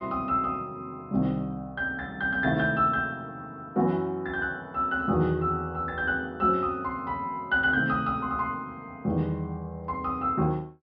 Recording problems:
low-pass filter; nothing above 5.5 kHz

